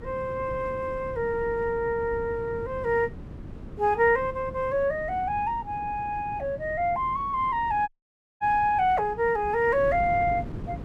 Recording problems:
wind on the microphone; below 260 Hz, SNR 15 dB
dropout; at 8 s for 0.5 s

